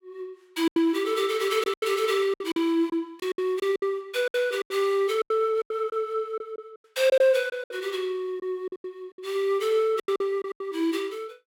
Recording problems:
packet loss; 13% of the sound replaced, filled with silence

